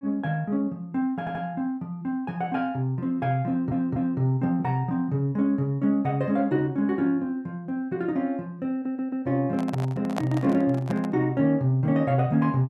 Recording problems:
audio stuttering; at 1 s, at 3.5 s and at 8.5 s
microphone handling noise; from 9.5 to 11 s; peak 0 dB vs average level

